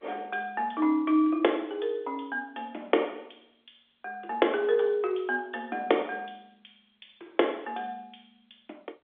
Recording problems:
telephone audio; 260 Hz to 3.6 kHz, G.711

